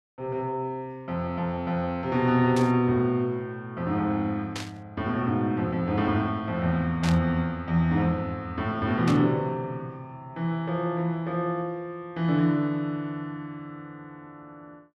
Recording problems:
static burst; 4 times, first at 2.5 s; peak -3 dB vs average level

